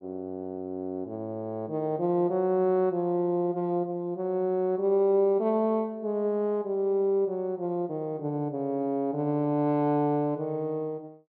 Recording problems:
treble missing; nothing above 5 kHz

